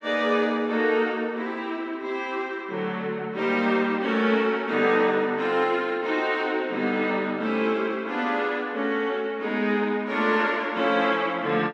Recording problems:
none

